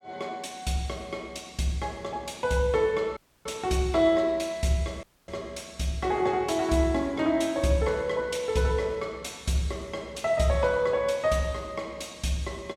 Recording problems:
dropout; at 3 s and at 5 s

